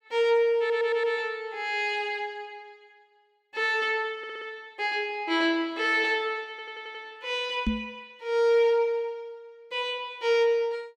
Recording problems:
audio stuttering; at 0.5 s, at 4 s and at 6.5 s
microphone thump; at 7.5 s; peak +3 dB vs average level

